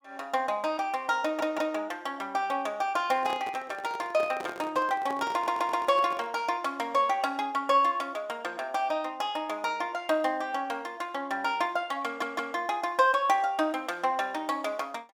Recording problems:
stutter; at 1 s, at 5.5 s and at 12 s
microphone handling noise; from 3 to 6.5 s; peak -6 dB vs average level

